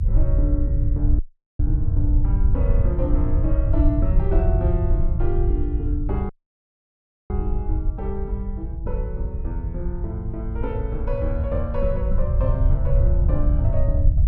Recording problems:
rumble; below 82 Hz, SNR -7 dB
dropout; at 1 s and at 6.5 s for 1 s

